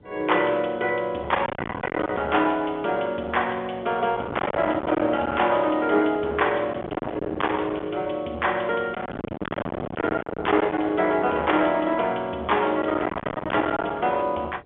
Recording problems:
telephone audio; 240 Hz to 3.4 kHz, G.711
distorted audio; hard clipping, signal-to-distortion ratio 3 dB
wind on the microphone; below 1.3 kHz, SNR 9 dB

